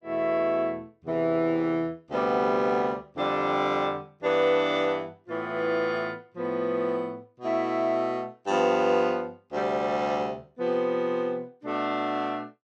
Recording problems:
none

